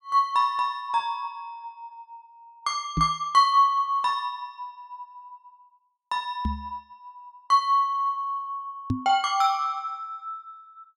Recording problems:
microphone thump; at 3 s, at 6.5 s and at 9 s; peak +2 dB vs average level

